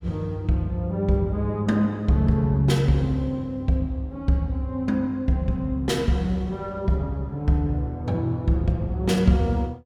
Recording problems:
none

